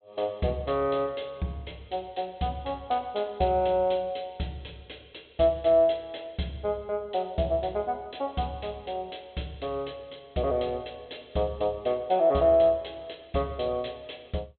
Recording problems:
treble missing; nothing above 4 kHz

